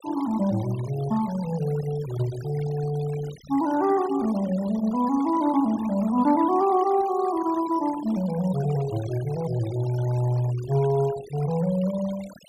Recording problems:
denoising artefacts; signal-to-artefact ratio 18 dB

